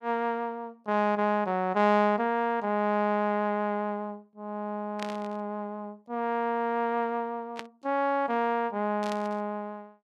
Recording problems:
static burst; at 5 s, at 7.5 s and at 9 s; peak -5 dB vs average level

